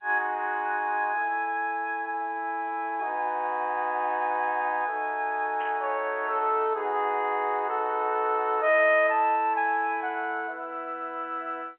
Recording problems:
phone line; 320 Hz to 3.3 kHz, G.711
burst of static; at 5.5 s; peak -13 dB vs average level

